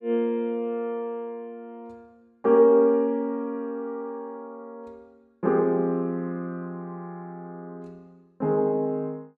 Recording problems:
none

